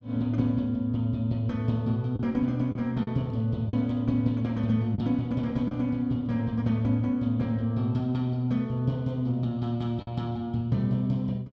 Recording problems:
lost packets; 2% of the sound replaced, filled with the last packet

